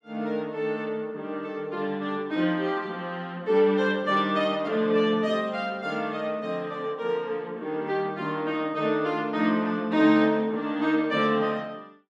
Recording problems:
none

